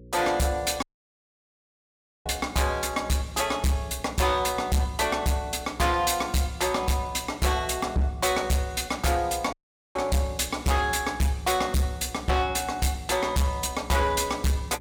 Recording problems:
distortion; hard clipping, signal-to-distortion ratio 7 dB
hum; 60 Hz, harmonics up to 540 Hz, SNR 22 dB
dropout; at 1 s for 1.5 s and at 9.5 s

